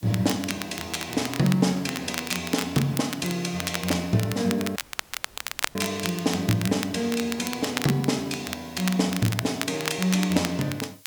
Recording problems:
hiss; slope +4 dB per octave, SNR 25 dB
crackle; vinyl, SNR 8 dB
audio cutting out; at 5 s for 1 s

